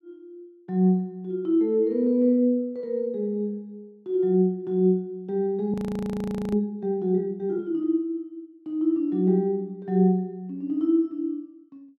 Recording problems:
audio freezing; at 5.5 s for 1 s

